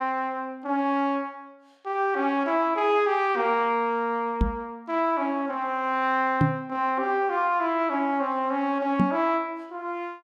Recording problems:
knock on the microphone; at 4.5 s, at 6.5 s and at 9 s; peak +7 dB vs average level

